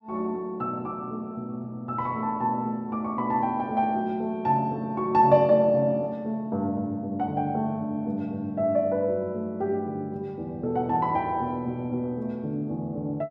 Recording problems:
none

